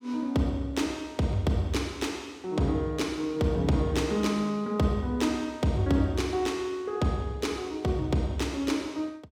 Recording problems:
none

